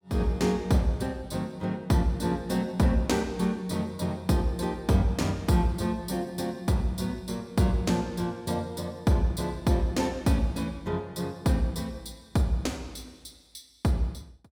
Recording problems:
none

